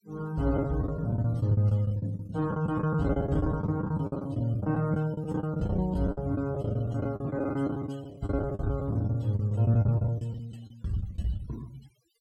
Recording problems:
noise reduction artefacts; signal-to-artefact ratio 26 dB
packet loss; 18% of the sound replaced, filled with the last packet

